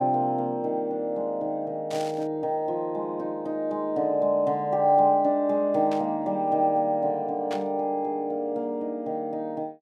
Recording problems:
burst of static; at 2 s, at 6 s and at 7.5 s; peak -9 dB vs average level

